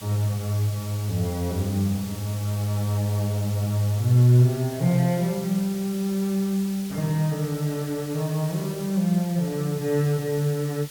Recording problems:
background hiss; slope 0 dB per octave, SNR 16 dB

